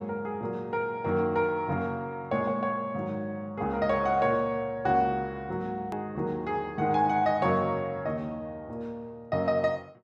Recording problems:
click at an edit; at 6 s

